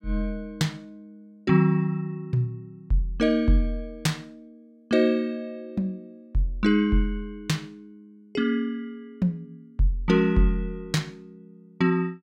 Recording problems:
none

